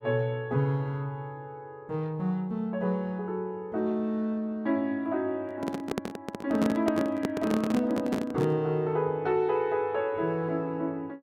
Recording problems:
handling noise; from 5.5 to 8.5 s; peak +3 dB vs average level

